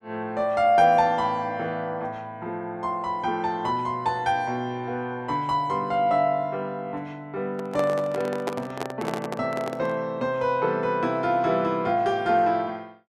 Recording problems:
handling noise; from 7.5 to 10 s; peak 0 dB vs average level

